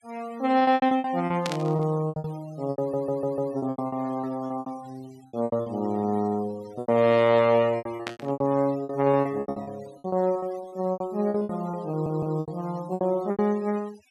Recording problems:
noise reduction artefacts; signal-to-artefact ratio 24 dB
lost packets; 18% of the sound replaced, filled with repeated pitch periods
burst of static; at 1.5 s and at 8 s; peak -1 dB vs average level
audio stuttering; at 3 s and at 12 s

